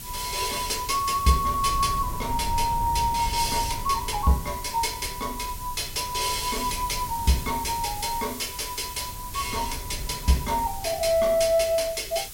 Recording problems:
background hiss; SNR 12 dB
wind on the microphone; below 110 Hz, SNR 13 dB

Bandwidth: 16.5 kHz